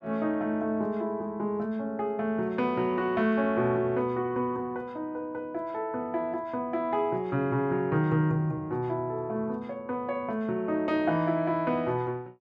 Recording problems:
none

